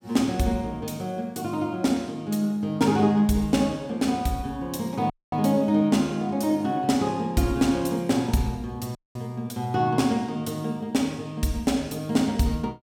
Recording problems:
audio cutting out; at 5 s and at 9 s

